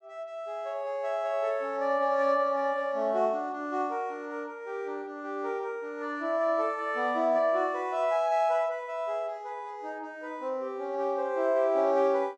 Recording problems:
none

